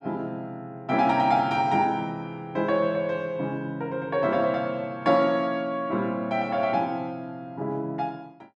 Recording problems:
none

